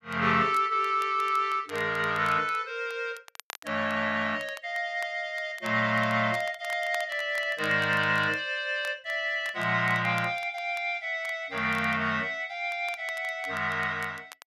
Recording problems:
crackle; vinyl, SNR 21 dB

